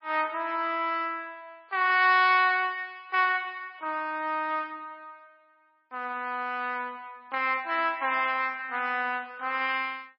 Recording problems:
lossy codec; MP3, log-spectral distance 2 dB, nothing above 4.5 kHz

